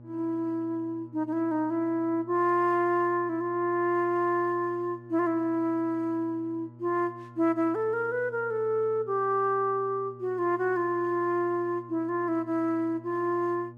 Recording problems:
hum; 60 Hz, harmonics up to 840 Hz, SNR 21 dB

